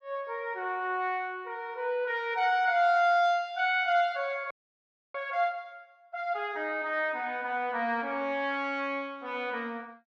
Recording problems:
frozen audio; at 4.5 s for 0.5 s

